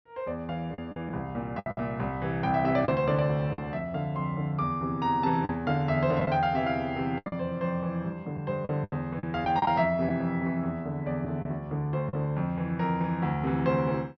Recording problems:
low-pass filter; nothing above 5.9 kHz
packet loss; 6% of the sound replaced, filled with the last packet

